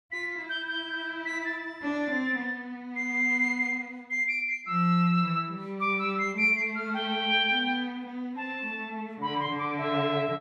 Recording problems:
none

